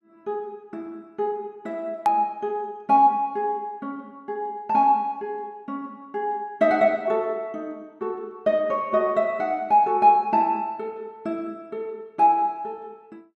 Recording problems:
hard cut with a click; at 2 s

